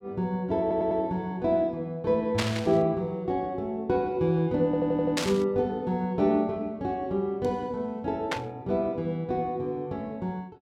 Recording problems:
stutter; at 0.5 s and at 4.5 s
static burst; at 2.5 s, at 5 s and at 8.5 s; peak +3 dB vs average level

